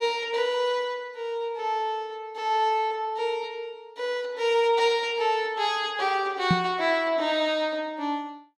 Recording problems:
microphone thump; at 6.5 s; peak +6 dB vs average level

